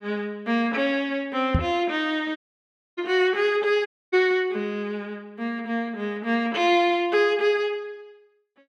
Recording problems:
knock on the microphone; at 1.5 s; peak +5 dB vs average level
dropout; at 2.5 s for 0.5 s and at 4 s

